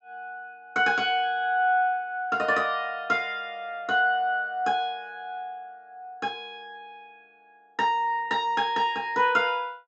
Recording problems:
low-pass filter; nothing above 7.6 kHz

